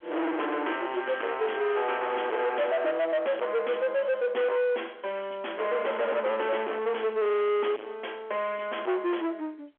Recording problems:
phone line; 370 Hz to 3.3 kHz, G.711
distorted audio; soft clipping, signal-to-distortion ratio 7 dB

